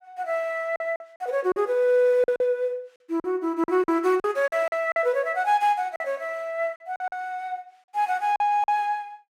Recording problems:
lost packets; 8% of the sound replaced, filled with silence

